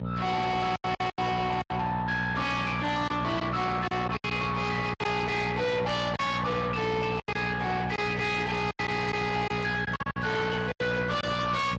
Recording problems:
codec artefacts; Speex, then MP3, log-spectral distance 4 dB, nothing above 7.3 kHz
distortion; soft clipping, signal-to-distortion ratio 6 dB
electrical hum; 60 Hz, harmonics up to 2 kHz, SNR 4 dB
packet loss; 9% of the sound replaced, filled with silence

